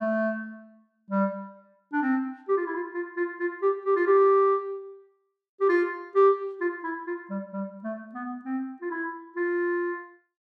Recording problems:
none

